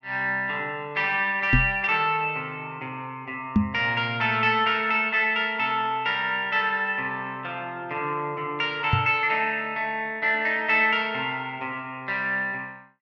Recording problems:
treble cut off; nothing above 7 kHz
microphone thump; at 1.5 s, at 3.5 s and at 9 s; peak +7 dB vs average level

